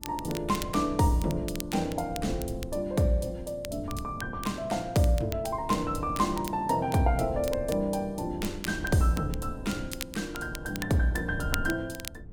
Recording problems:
wind on the microphone; below 120 Hz, SNR 12 dB
crackle; vinyl, SNR 14 dB

